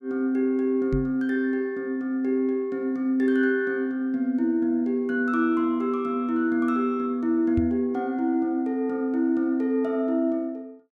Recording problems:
knock on the microphone; at 1 s and at 7.5 s; peak 0 dB vs average level

